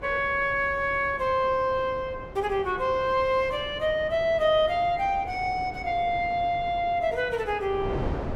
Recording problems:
wind on the microphone; below 550 Hz, SNR 14 dB

